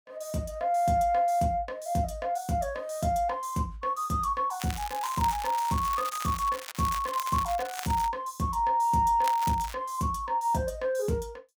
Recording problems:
crackling; from 4.5 to 8 s and at 9 s; loose cable, SNR 12 dB

